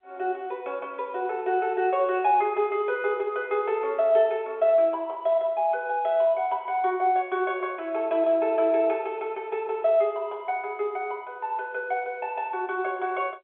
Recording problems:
telephone audio; 340 Hz to 3.5 kHz, G.711

